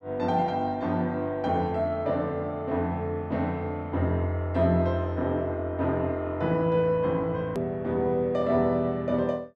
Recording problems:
click at an edit; at 7.5 s

